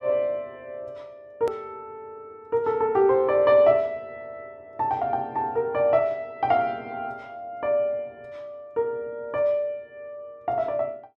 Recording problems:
click at an edit; at 1.5 s

